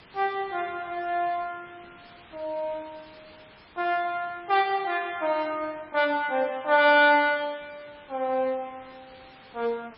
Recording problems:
lossy compression; MP3, log-spectral distance 11 dB, nothing above 4.8 kHz
background hiss; SNR 25 dB

